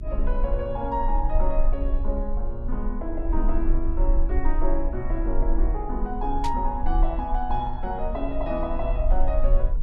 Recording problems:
electrical hum; 50 Hz, harmonics up to 400 Hz, SNR 20 dB
rumble; below 38 Hz, strongest tone 20 Hz, SNR -1 dB
burst of static; at 6.5 s; peak -2 dB vs average level

